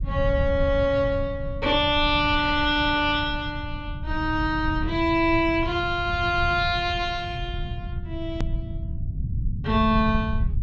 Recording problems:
treble cut off; nothing above 8 kHz
rumble; below 120 Hz, SNR 8 dB
edit click; at 8.5 s

